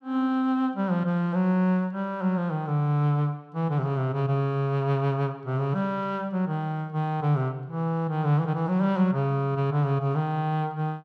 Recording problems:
none

